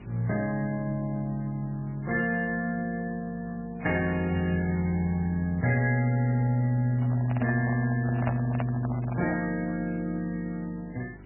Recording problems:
lossy codec; MP3, log-spectral distance 4 dB, nothing above 2.8 kHz
hum; 50 Hz, harmonics up to 400 Hz, SNR 19 dB
hiss; SNR 28 dB
microphone handling noise; from 7 to 9.5 s; peak +1 dB vs average level

